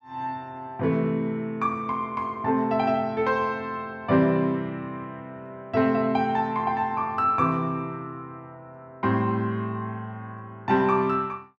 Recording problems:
none

